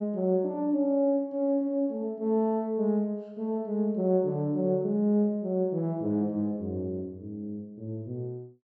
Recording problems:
treble cut off; nothing above 8 kHz

